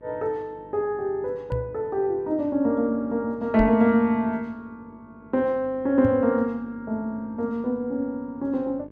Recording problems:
electrical hum; 50 Hz, harmonics up to 1.2 kHz, SNR 25 dB
knock on the microphone; at 1.5 s, at 3.5 s and at 6 s; peak +1 dB vs average level

